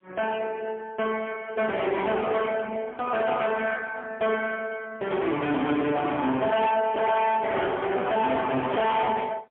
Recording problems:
phone line; 170 Hz to 3.4 kHz, AMR-NB, then MP3
distorted audio; hard clipping, uneven, signal-to-distortion ratio 7 dB

